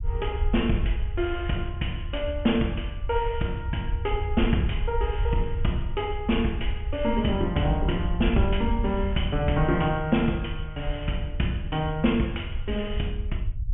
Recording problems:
treble cut off; nothing above 3.3 kHz
rumble; below 74 Hz, SNR 5 dB

